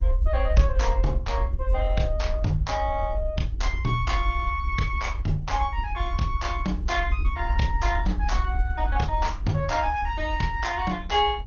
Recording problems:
lossy compression; MP2, then Opus, log-spectral distance 2 dB, nothing above 6.7 kHz
low-frequency rumble; below 62 Hz, SNR 1 dB

